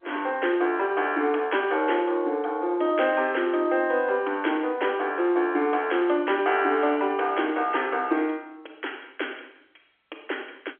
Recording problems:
phone line; 280 Hz to 3.3 kHz, G.711

